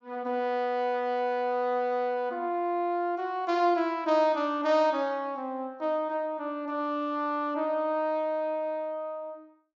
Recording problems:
low-pass filter; nothing above 7.3 kHz

